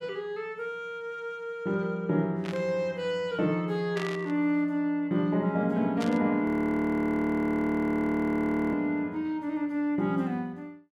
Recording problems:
static burst; at 2.5 s, at 4 s and at 6 s; peak -6 dB vs average level
frozen audio; at 6.5 s for 2.5 s

